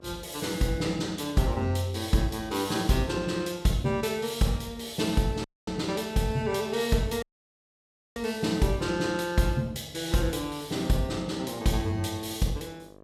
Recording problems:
hum; 50 Hz, harmonics up to 1.4 kHz, SNR 26 dB
audio cutting out; at 5.5 s and at 7 s for 1 s

